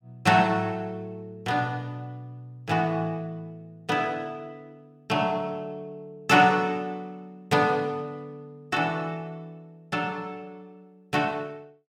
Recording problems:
none

